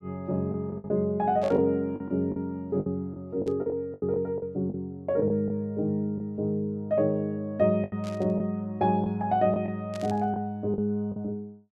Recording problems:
packet loss; 8% of the sound replaced, filled with the last packet
static burst; 4 times, first at 1.5 s; peak -12 dB vs average level

